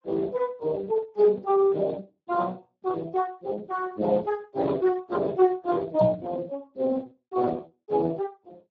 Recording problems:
lossy codec; Speex, then Speex, log-spectral distance 3 dB
knock on the microphone; at 6 s; peak +5 dB vs average level

